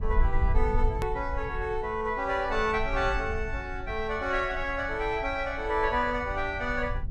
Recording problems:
rumble; below 62 Hz, SNR 7 dB
hard cut with a click; at 1 s

